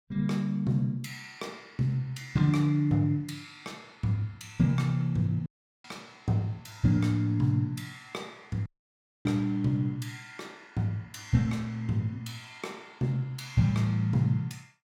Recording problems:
dropout; at 5.5 s and at 8.5 s for 0.5 s

